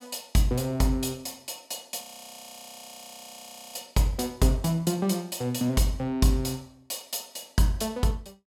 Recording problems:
frozen audio; at 2 s for 1.5 s

